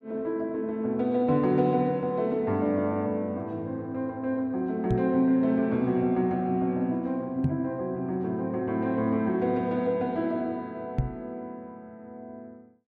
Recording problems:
microphone bump; at 5 s, at 7.5 s and at 11 s; peak +5 dB vs average level

